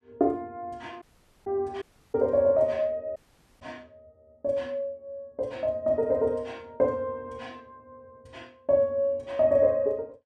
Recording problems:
audio cutting out; at 1 s, at 2 s and at 3 s

